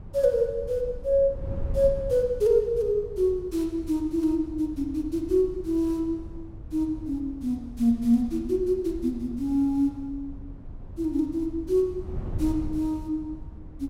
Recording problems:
wind noise; below 110 Hz, SNR 14 dB

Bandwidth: 16 kHz